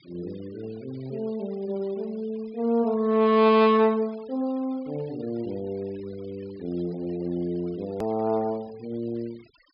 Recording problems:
treble missing; nothing above 5.5 kHz
denoising artefacts; signal-to-artefact ratio 26 dB
hard cut with a click; at 8 s

